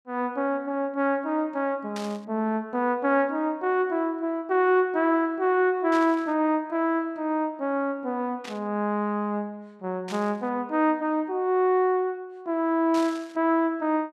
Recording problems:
static burst; 5 times, first at 2 s; peak -9 dB vs average level

